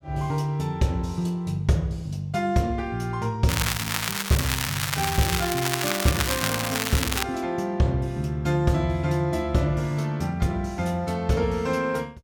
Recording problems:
crackle; from 3.5 to 7 s; loose cable, SNR 1 dB

